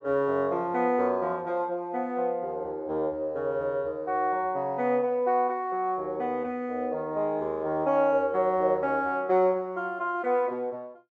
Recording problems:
none

